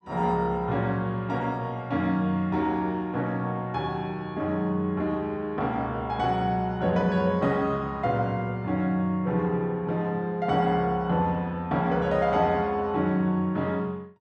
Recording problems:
none

